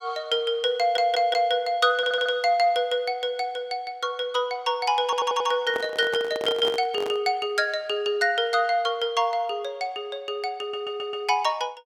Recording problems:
stutter; 4 times, first at 1 s
handling noise; from 5.5 to 7 s; peak -4 dB vs average level

